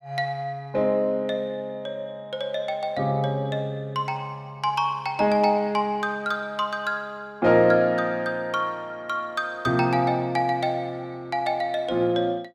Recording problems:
none

